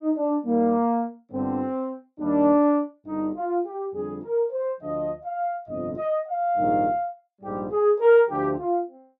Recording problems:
none

